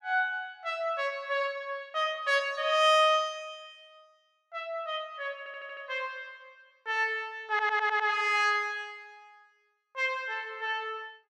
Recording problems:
stutter; at 5.5 s and at 7.5 s

